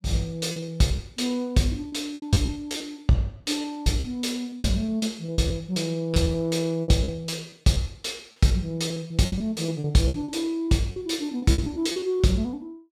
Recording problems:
packet loss; 13% of the sound replaced, filled with repeated pitch periods

